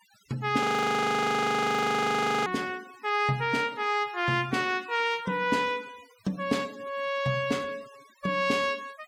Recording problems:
denoising artefacts; signal-to-artefact ratio 22 dB
frozen audio; at 0.5 s for 2 s

